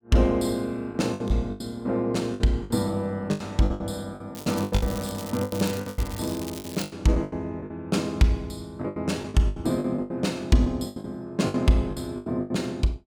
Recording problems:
lost packets; 15% of the sound replaced, filled with the last packet
crackle; from 4.5 to 7 s; loose cable, SNR 13 dB

